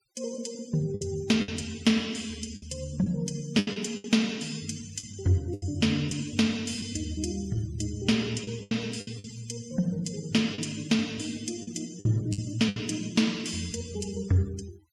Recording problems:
denoising artefacts; signal-to-artefact ratio 21 dB
lost packets; 7% of the sound replaced, filled with the last packet

